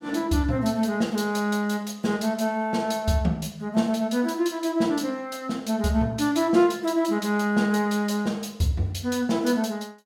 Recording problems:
none

